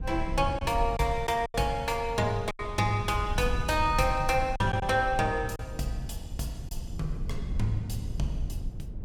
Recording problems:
rumble; below 92 Hz, SNR 8 dB
lost packets; 4% of the sound replaced, filled with silence

